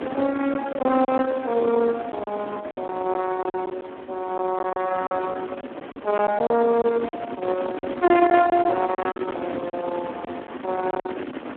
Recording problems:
phone line; 220 Hz to 3.5 kHz, Speex
distorted audio; soft clipping, signal-to-distortion ratio 16 dB
wind on the microphone; below 800 Hz, SNR 10 dB
lost packets; 8% of the sound replaced, filled with silence

